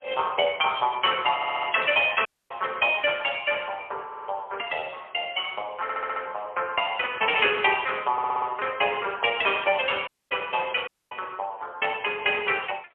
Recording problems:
phone line; 340 Hz to 3.4 kHz, AMR-NB, then MP3
audio stuttering; 4 times, first at 1.5 s
audio cutting out; at 2.5 s, at 10 s and at 11 s

